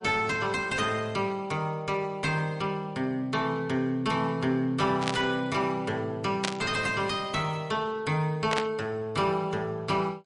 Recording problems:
lossy compression; MP3, log-spectral distance 2 dB, nothing above 10.4 kHz
distorted audio; soft clipping, signal-to-distortion ratio 11 dB
static burst; at 5 s, at 6.5 s and at 8.5 s; peak +4 dB vs average level

